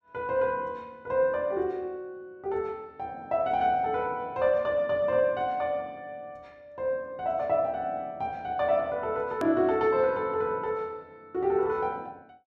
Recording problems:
edit click; at 9.5 s

